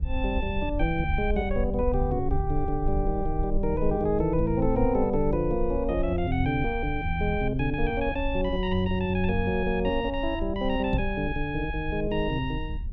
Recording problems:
rumble; below 60 Hz, SNR 7 dB
microphone thump; at 11 s; peak +3 dB vs average level

